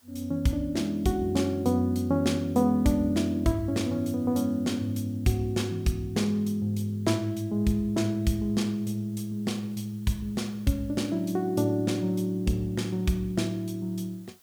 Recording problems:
hiss; slope -1 dB per octave, SNR 30 dB

